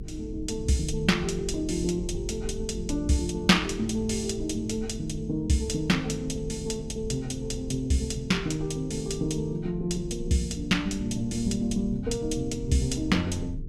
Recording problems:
electrical hum; 50 Hz, harmonics up to 450 Hz, SNR 16 dB
rumble; below 110 Hz, SNR 12 dB

